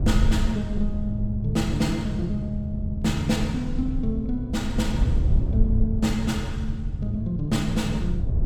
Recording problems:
low-frequency rumble; below 82 Hz, SNR 3 dB

